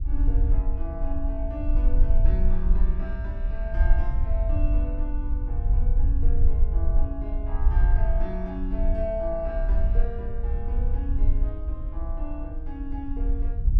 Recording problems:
low-frequency rumble; below 52 Hz, SNR -9 dB

